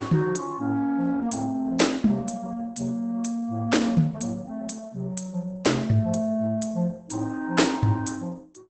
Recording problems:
lossy compression; Opus, log-spectral distance 4 dB, nothing above 8.2 kHz

